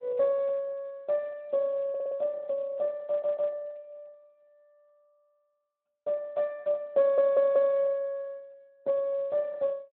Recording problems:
phone line; 280 Hz to 2.2 kHz, Speex
stutter; at 2 s, at 3 s and at 7 s

